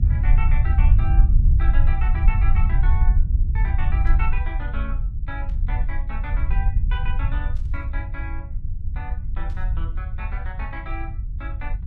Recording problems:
rumble; below 66 Hz, SNR -13 dB
static burst; 4 times, first at 4 s; peak -13 dB vs average level

